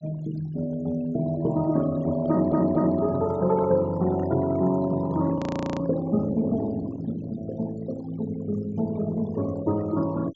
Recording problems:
treble missing; nothing above 7.4 kHz
denoising artefacts; signal-to-artefact ratio 18 dB
microphone handling noise; from 2 to 6 s; peak -6 dB vs average level
audio stuttering; at 2.5 s
frozen audio; at 5.5 s

